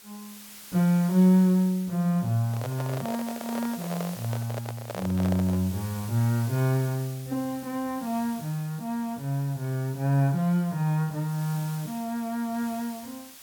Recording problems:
background hiss; slope +1 dB per octave, SNR 17 dB
microphone handling noise; from 2.5 to 5.5 s; peak -4 dB vs average level

